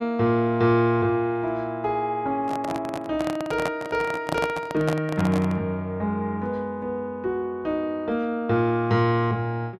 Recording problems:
handling noise; from 2.5 to 5.5 s; peak +2 dB vs average level

